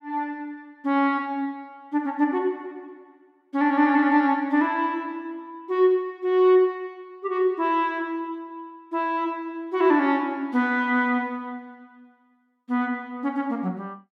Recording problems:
none

